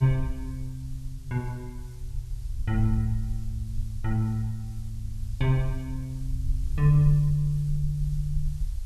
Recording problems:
hiss; slope +1 dB per octave, SNR 27 dB
low-frequency rumble; below 60 Hz, SNR 7 dB

